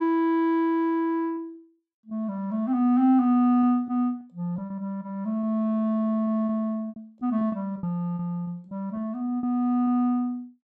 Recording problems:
lost packets; 7% of the sound replaced, filled with repeated pitch periods

